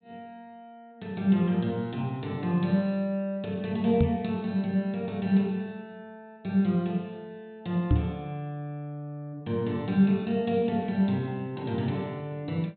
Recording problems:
low-pass filter; nothing above 4 kHz
microphone thump; at 4 s and at 8 s; peak +8 dB vs average level

